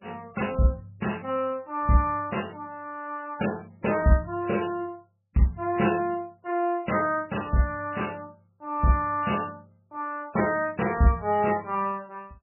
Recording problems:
lossy compression; MP3, log-spectral distance 4 dB, nothing above 2.9 kHz

